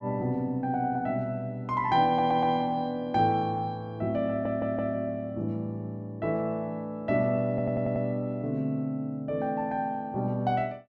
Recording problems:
audio stuttering; at 2 s, at 4.5 s and at 7.5 s

